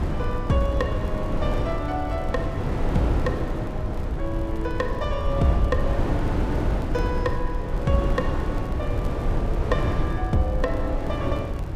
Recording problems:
rumble; below 72 Hz, SNR 4 dB
wind noise; below 390 Hz, SNR 0 dB
crackling; vinyl, SNR 28 dB

